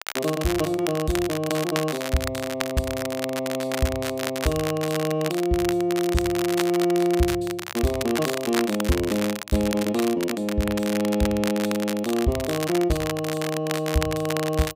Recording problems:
crackle; vinyl, SNR 7 dB

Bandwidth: 15.5 kHz